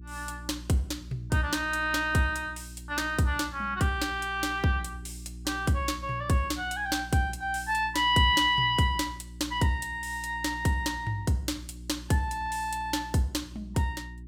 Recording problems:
hum; 60 Hz, harmonics up to 360 Hz, SNR 16 dB

